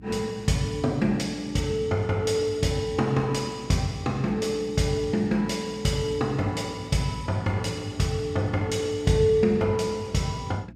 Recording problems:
electrical hum; 60 Hz, harmonics up to 300 Hz, SNR 22 dB

